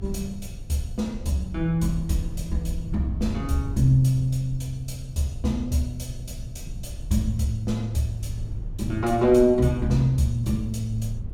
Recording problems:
rumble; below 86 Hz, SNR 14 dB
wind on the microphone; below 110 Hz, SNR 14 dB

